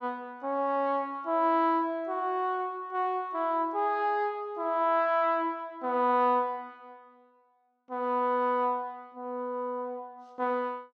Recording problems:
none

